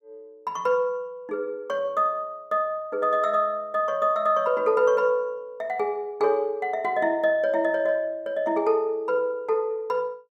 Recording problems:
none

